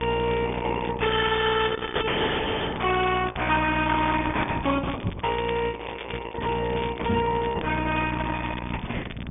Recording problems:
treble missing; nothing above 3.6 kHz
codec artefacts; Opus, log-spectral distance 5 dB
hum; 60 Hz, harmonics up to 1.2 kHz, SNR 11 dB
crackling; vinyl, SNR 16 dB
knock on the microphone; at 5 s and at 7 s; peak +2 dB vs average level

